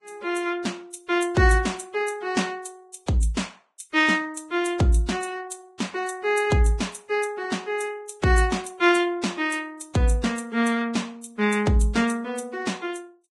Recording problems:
codec artefacts; Vorbis, log-spectral distance 4 dB, nothing above 10.7 kHz

